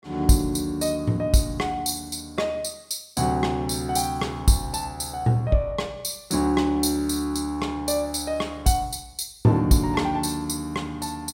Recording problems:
none

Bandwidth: 16.5 kHz